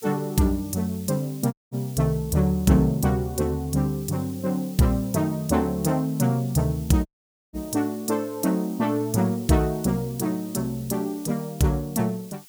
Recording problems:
background hiss; slope +4 dB per octave, SNR 20 dB
audio cutting out; at 1.5 s and at 7 s

